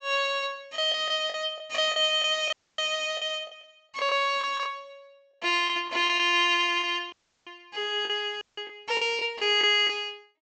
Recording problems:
treble missing; nothing above 8 kHz
lost packets; 8% of the sound replaced, filled with the last packet
dropout; at 2.5 s, at 7 s and at 8.5 s

